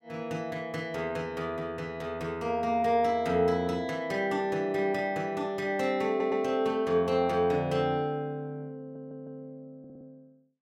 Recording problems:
audio stuttering; at 6 s, at 9 s and at 10 s

